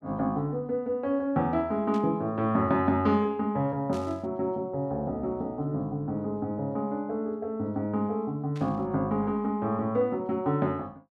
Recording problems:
burst of static; at 2 s, at 4 s and at 8.5 s; peak -14 dB vs average level

